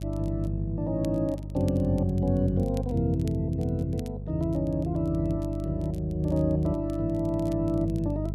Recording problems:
electrical hum; 50 Hz, harmonics up to 450 Hz, SNR 6 dB
crackle; vinyl, SNR 27 dB

